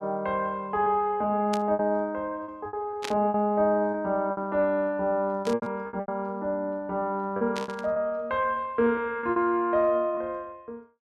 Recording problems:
packet loss; 9% of the sound replaced, filled with repeated pitch periods
burst of static; 4 times, first at 1.5 s; peak -2 dB vs average level

